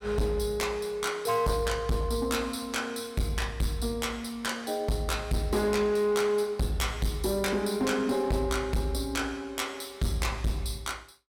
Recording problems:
distortion; hard clipping, uneven, signal-to-distortion ratio 7 dB

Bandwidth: 16.5 kHz